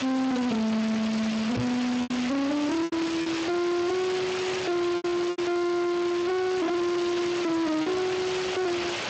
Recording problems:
lossy compression; Speex, log-spectral distance 11 dB, nothing above 7.8 kHz
distortion; soft clipping, signal-to-distortion ratio 5 dB
hiss; slope -3 dB per octave, SNR 4 dB
packet loss; 5% of the sound replaced, filled with repeated pitch periods
knock on the microphone; at 1.5 s; peak +3 dB vs average level

